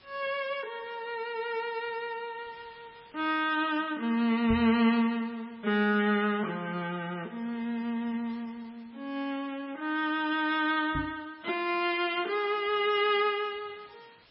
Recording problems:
codec artefacts; MP3, log-spectral distance 5 dB, nothing above 5 kHz
background hiss; SNR 28 dB
knock on the microphone; at 4.5 s and at 11 s; peak -2 dB vs average level

